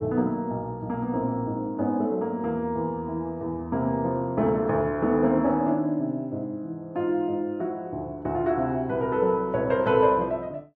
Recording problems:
none

